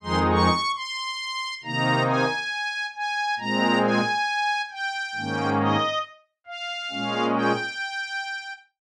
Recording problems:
none

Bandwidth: 13 kHz